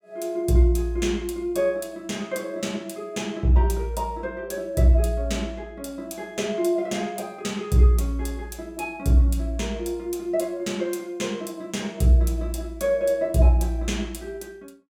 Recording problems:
none

